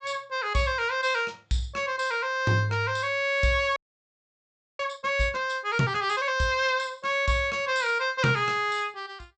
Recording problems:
treble cut off; nothing above 8 kHz
frozen audio; at 4 s for 1 s

